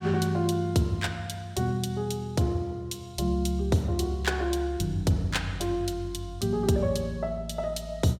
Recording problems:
none

